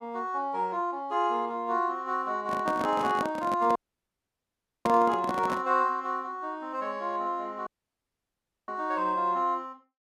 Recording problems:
microphone handling noise; from 2.5 to 5.5 s; peak +1 dB vs average level
dropout; at 4 s for 1 s and at 7.5 s for 1 s

